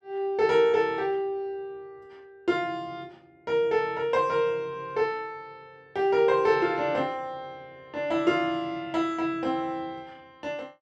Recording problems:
none

